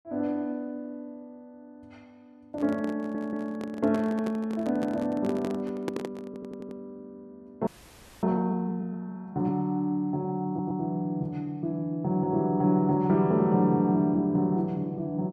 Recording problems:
handling noise; from 2.5 to 7 s; peak 0 dB vs average level
stutter; at 3 s, at 6.5 s and at 10 s
frozen audio; at 7.5 s for 0.5 s

